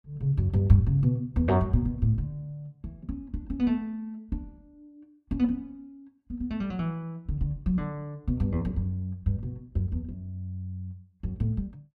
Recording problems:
none

